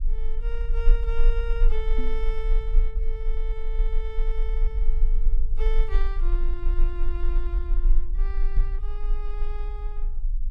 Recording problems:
low-frequency rumble; below 34 Hz, strongest tone 18 Hz, SNR -11 dB
knock on the microphone; at 2 s and at 8.5 s; peak +6 dB vs average level

